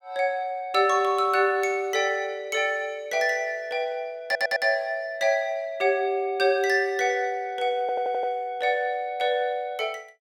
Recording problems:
audio stuttering; at 4.5 s and at 8 s

